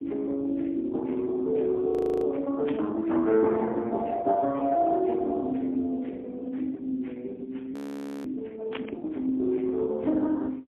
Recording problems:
phone line; 220 Hz to 2 kHz, AMR-NB, then MP3
audio freezing; at 2 s and at 7.5 s for 0.5 s
static burst; at 2.5 s and at 8.5 s; peak -9 dB vs average level

